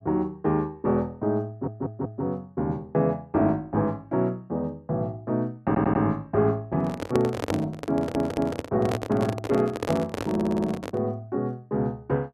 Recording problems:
audio stuttering; 4 times, first at 1.5 s
handling noise; from 7 to 11 s; peak +3 dB vs average level

